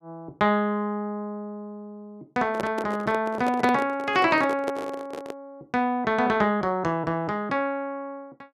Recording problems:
handling noise; from 2.5 to 5.5 s; peak +1 dB vs average level

